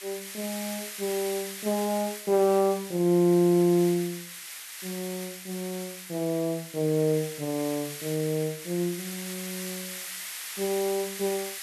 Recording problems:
hiss; SNR 9 dB

